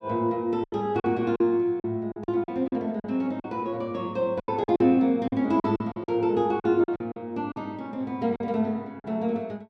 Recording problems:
packet loss; 11% of the sound replaced, filled with silence

